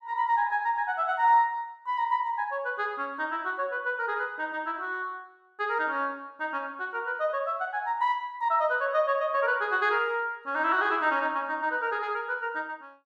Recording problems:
none

